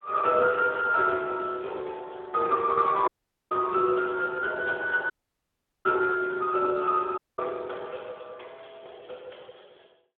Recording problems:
phone line; 320 Hz to 3.6 kHz, Speex
audio cutting out; at 3 s, at 5 s for 1 s and at 7 s

